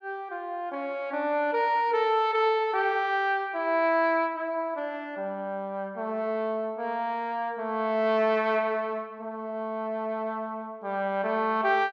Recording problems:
none

